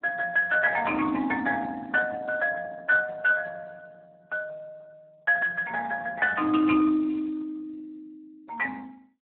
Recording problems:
phone line; 280 Hz to 2.8 kHz, Speex

